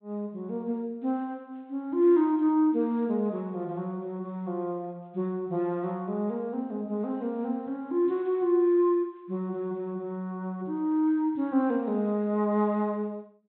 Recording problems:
treble missing; nothing above 4 kHz

